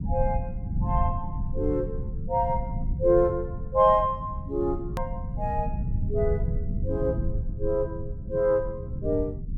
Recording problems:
rumble; below 130 Hz, SNR 5 dB
edit click; at 5 s

